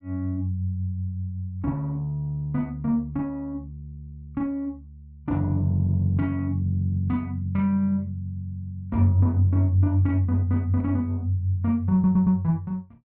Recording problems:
stutter; at 12 s

